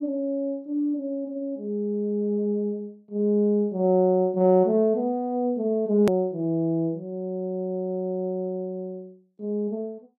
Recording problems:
hard cut with a click; at 6 s

